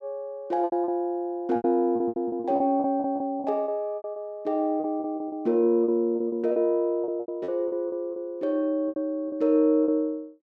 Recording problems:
packet loss; 15% of the sound replaced, filled with repeated pitch periods

